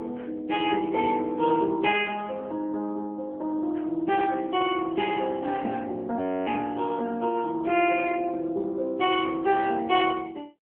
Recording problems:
phone line; 240 Hz to 3.3 kHz, AMR-NB
audio freezing; at 6 s

